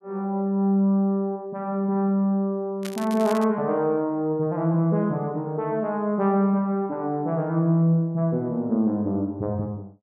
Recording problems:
crackle; at 3 s; loose cable, SNR 17 dB

